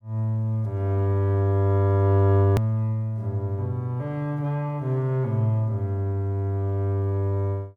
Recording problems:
click at an edit; at 2.5 s

